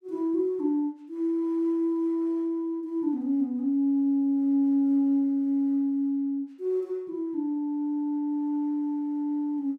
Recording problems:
none

